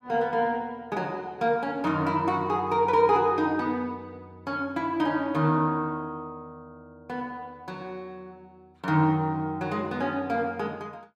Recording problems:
none

